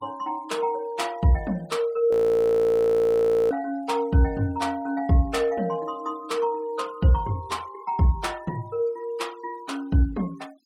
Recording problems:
denoising artefacts; signal-to-artefact ratio 26 dB
frozen audio; at 2 s for 1.5 s

